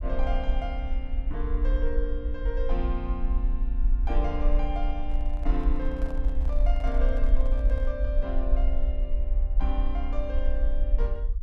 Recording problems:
rumble; below 46 Hz, SNR -7 dB
handling noise; from 5 to 8 s; peak -7 dB vs average level

